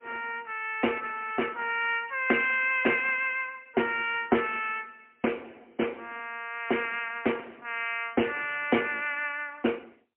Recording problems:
phone line; 240 Hz to 3.1 kHz, AMR-NB, then MP3

